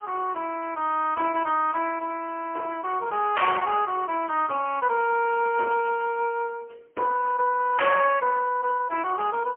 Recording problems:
telephone audio; 280 Hz to 3.1 kHz, AMR-NB, then MP3

